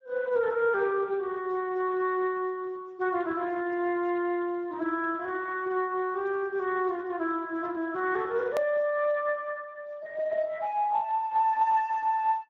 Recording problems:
lossy compression; Speex, log-spectral distance 2 dB, nothing above 16.1 kHz
edit click; at 8.5 s

